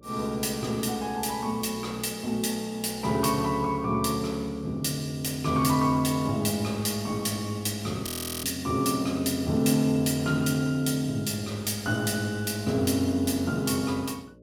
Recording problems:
electrical hum; 60 Hz, harmonics up to 600 Hz, SNR 27 dB
frozen audio; at 8 s

